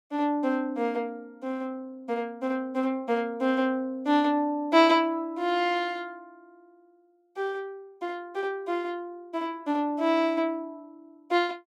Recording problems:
none

